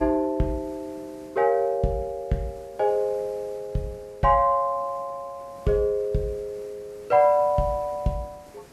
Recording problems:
hiss; slope -5 dB per octave, SNR 26 dB

